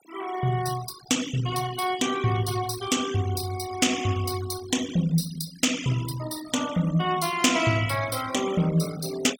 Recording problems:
noise reduction artefacts; signal-to-artefact ratio 12 dB

